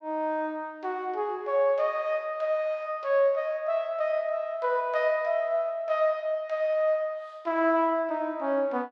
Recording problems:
none

